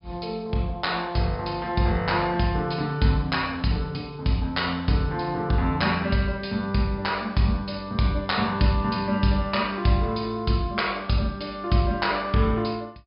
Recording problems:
treble missing; nothing above 5.5 kHz

